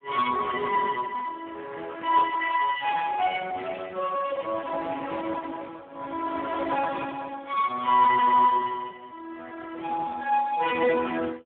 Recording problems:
phone line; 280 Hz to 2.5 kHz, Speex

